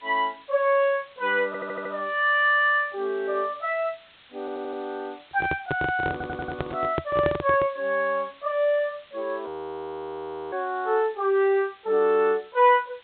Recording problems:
treble missing; nothing above 4 kHz
hiss; SNR 27 dB
stutter; at 1.5 s, at 4.5 s and at 6 s
handling noise; from 5.5 to 7.5 s; peak +1 dB vs average level
audio freezing; at 9.5 s for 1 s

